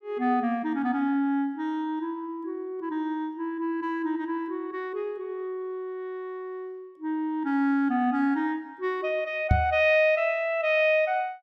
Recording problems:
knock on the microphone; at 9.5 s; peak +8 dB vs average level

